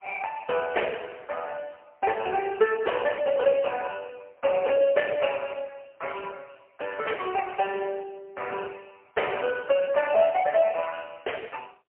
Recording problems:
phone line; 340 Hz to 2.9 kHz, AMR-NB, then MP3

